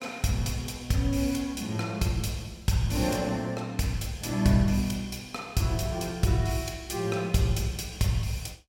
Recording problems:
none

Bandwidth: 17 kHz